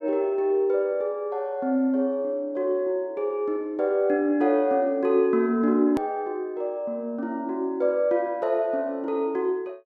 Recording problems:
click at an edit; at 6 s

